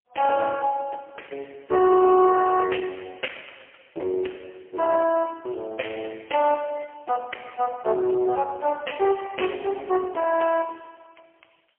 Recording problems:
telephone audio; 320 Hz to 3.1 kHz, AMR-NB, then MP3

